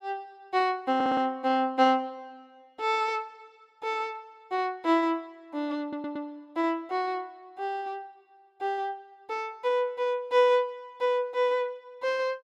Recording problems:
stutter; at 1 s and at 6 s

